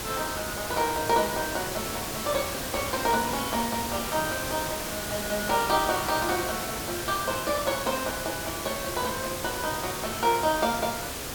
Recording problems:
background hiss; slope -3 dB per octave, SNR 3 dB

